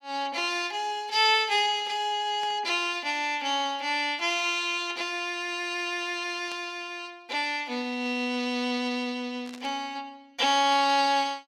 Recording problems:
static burst; at 2.5 s, at 6.5 s and at 9.5 s; peak -12 dB vs average level

